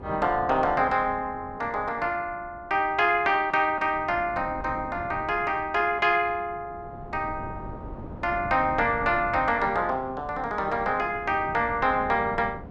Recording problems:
wind on the microphone; below 390 Hz, SNR 16 dB

